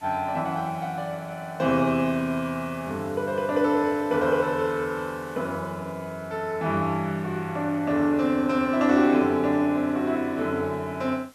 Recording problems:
hiss; slope -1 dB per octave, SNR 27 dB

